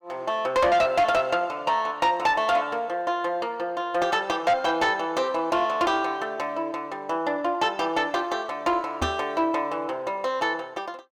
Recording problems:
distorted audio; soft clipping, signal-to-distortion ratio 12 dB
microphone thump; at 9 s; peak -1 dB vs average level

